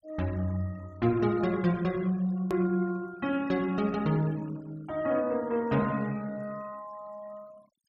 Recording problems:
noise reduction artefacts; signal-to-artefact ratio 24 dB
hard cut with a click; at 2.5 s

